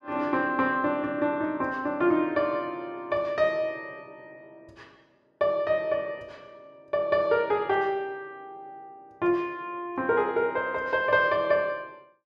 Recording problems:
none

